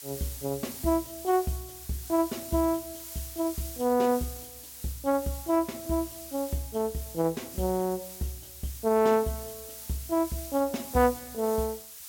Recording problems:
background hiss; slope +3 dB per octave, SNR 11 dB

